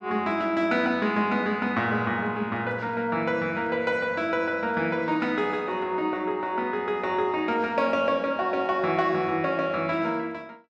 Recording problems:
none

